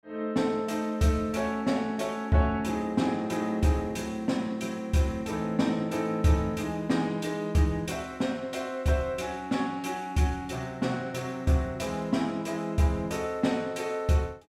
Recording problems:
none

